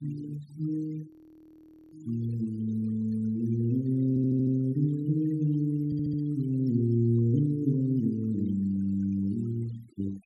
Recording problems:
noise reduction artefacts; signal-to-artefact ratio 24 dB
frozen audio; at 1 s for 1 s
stutter; at 4 s and at 6 s

